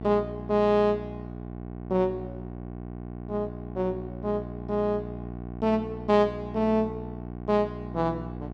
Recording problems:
electrical hum; 60 Hz, harmonics up to 1.1 kHz, SNR 10 dB

